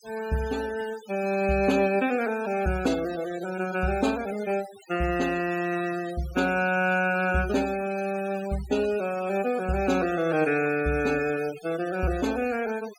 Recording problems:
noise reduction artefacts; signal-to-artefact ratio 17 dB

